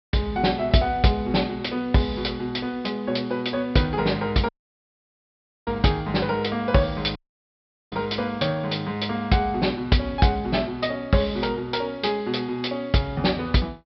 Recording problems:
treble cut off; nothing above 5.4 kHz
audio cutting out; at 4.5 s for 1 s and at 7 s for 1 s

